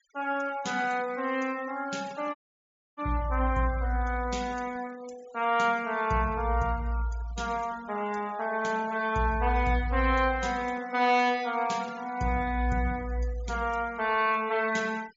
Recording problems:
treble cut off; nothing above 7.4 kHz
noise reduction artefacts; signal-to-artefact ratio 20 dB
dropout; at 2.5 s for 0.5 s

